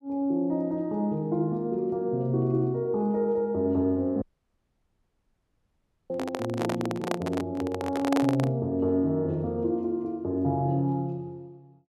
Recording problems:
dropout; at 4 s for 2 s
handling noise; from 6 to 8.5 s; peak +3 dB vs average level

